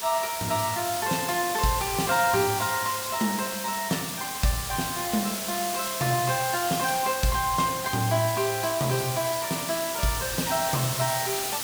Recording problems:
hiss; slope 0 dB per octave, SNR 3 dB

